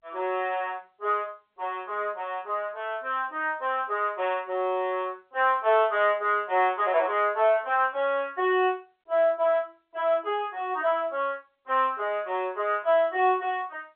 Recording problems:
phone line; 280 Hz to 3.7 kHz, G.711

